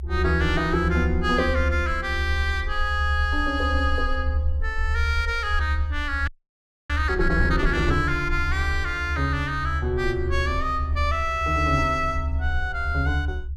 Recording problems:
rumble; below 76 Hz, strongest tone 74 Hz, SNR 3 dB
audio freezing; at 6.5 s for 0.5 s

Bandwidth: 14.5 kHz